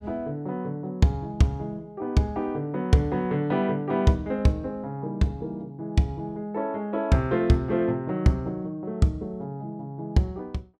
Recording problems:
none

